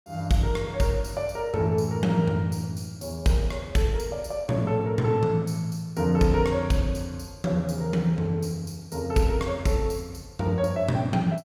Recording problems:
none

